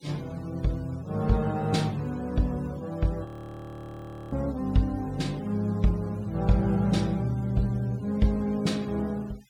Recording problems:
denoising artefacts; signal-to-artefact ratio 26 dB
audio freezing; at 3.5 s for 1 s

